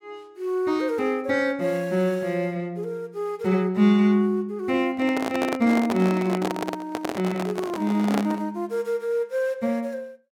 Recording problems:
microphone handling noise; from 5 to 8.5 s; peak 0 dB vs average level

